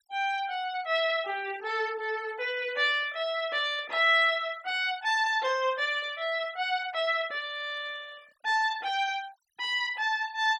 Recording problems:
noise reduction artefacts; signal-to-artefact ratio 24 dB

